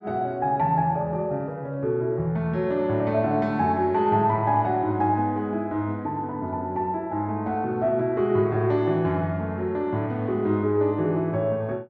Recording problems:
none

